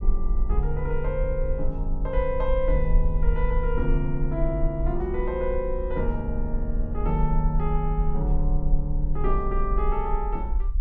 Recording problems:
low-frequency rumble; below 44 Hz, SNR 0 dB

